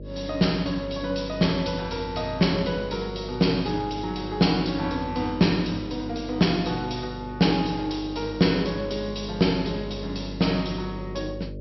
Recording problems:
treble cut off; nothing above 5.7 kHz
mains hum; 50 Hz, harmonics up to 600 Hz, SNR 12 dB

